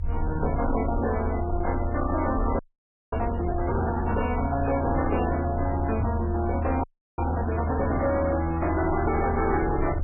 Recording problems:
lossy compression; MP3, log-spectral distance 3 dB, nothing above 2.7 kHz
distortion; hard clipping, signal-to-distortion ratio 11 dB
low-frequency rumble; below 82 Hz, strongest tone 80 Hz, SNR 4 dB
frozen audio; at 2.5 s for 0.5 s and at 7 s
microphone bump; at 6 s; peak +1 dB vs average level

